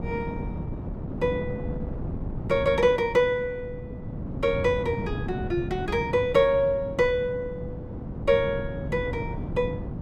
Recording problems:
wind on the microphone; below 250 Hz, SNR 8 dB

